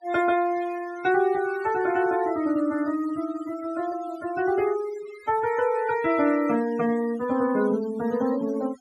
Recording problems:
denoising artefacts; signal-to-artefact ratio 17 dB

